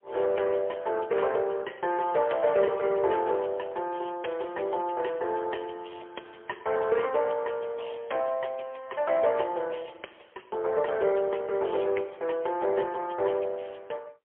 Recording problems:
telephone audio; 320 Hz to 3.3 kHz, AMR-NB, then MP3

